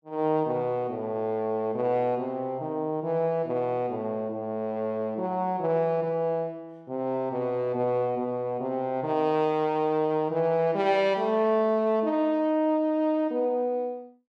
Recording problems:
none

